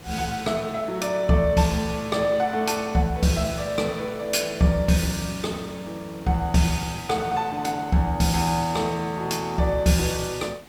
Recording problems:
hiss; slope -4 dB per octave, SNR 21 dB

